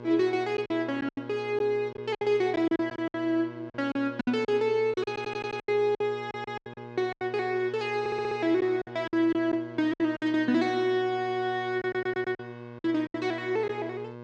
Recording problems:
hum; 60 Hz, harmonics up to 2.2 kHz, SNR 15 dB
packet loss; 11% of the sound replaced, filled with silence
stutter; 4 times, first at 5 s

